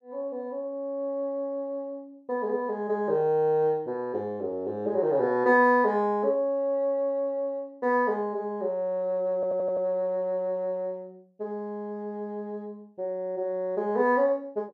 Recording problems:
stutter; at 9.5 s

